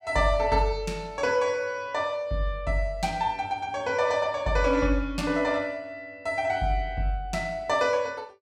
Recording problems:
none

